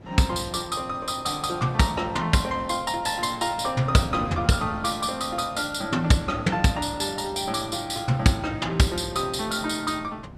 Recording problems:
wind noise; below 340 Hz, SNR 18 dB

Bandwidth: 14.5 kHz